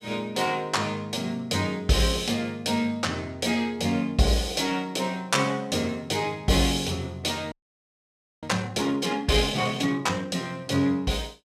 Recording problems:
audio freezing; at 7.5 s for 1 s

